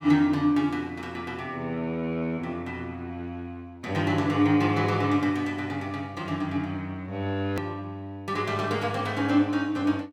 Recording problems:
edit click; at 7.5 s

